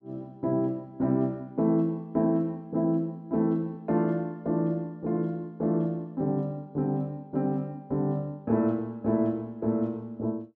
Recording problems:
none

